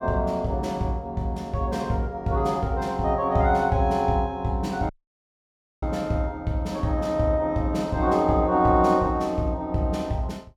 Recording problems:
audio cutting out; at 5 s for 1 s

